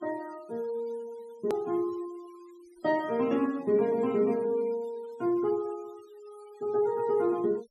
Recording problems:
noise reduction artefacts; signal-to-artefact ratio 23 dB
click at an edit; at 1.5 s

